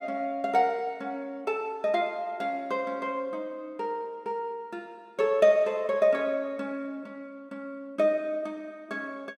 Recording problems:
none

